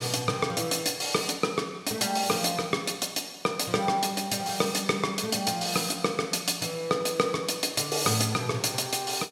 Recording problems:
none

